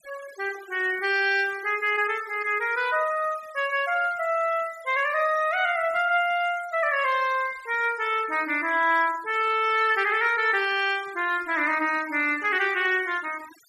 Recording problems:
noise reduction artefacts; signal-to-artefact ratio 19 dB

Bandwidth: 14 kHz